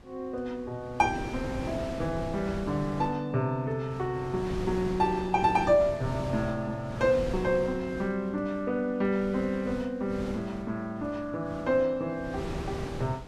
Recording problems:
wind on the microphone; below 490 Hz, SNR 10 dB

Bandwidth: 13.5 kHz